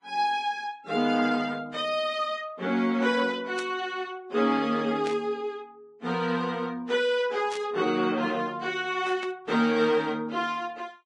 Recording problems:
codec artefacts; Vorbis, log-spectral distance 2 dB, nothing above 10.7 kHz
burst of static; 4 times, first at 3.5 s; peak -7 dB vs average level

